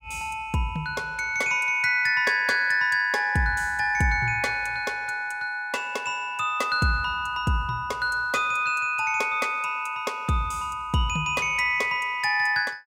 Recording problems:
none

